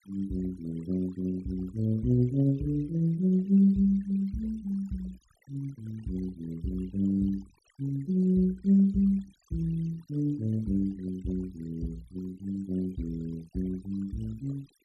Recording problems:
denoising artefacts; signal-to-artefact ratio 25 dB

